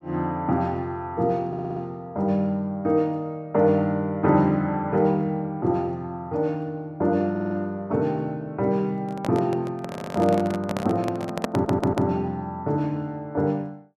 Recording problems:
audio stuttering; 4 times, first at 1.5 s
microphone handling noise; from 9 to 12 s; peak +3 dB vs average level

